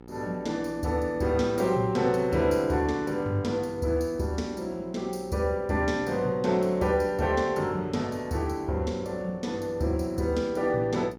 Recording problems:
hum; 60 Hz, harmonics up to 1.7 kHz, SNR 19 dB

